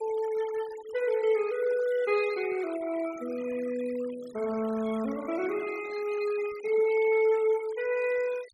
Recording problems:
noise reduction artefacts; signal-to-artefact ratio 19 dB

